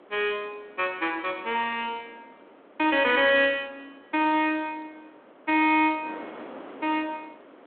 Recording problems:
phone line; 220 Hz to 3.6 kHz, G.726
wind noise; below 1.1 kHz, SNR 23 dB

